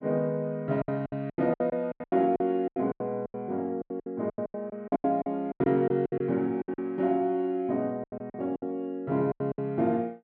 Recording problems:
lost packets; 18% of the sound replaced, filled with silence

